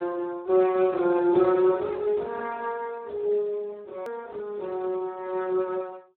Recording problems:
telephone audio; 260 Hz to 2.3 kHz, Speex
edit click; at 4 s

